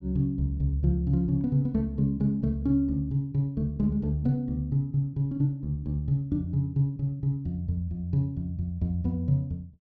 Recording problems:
none

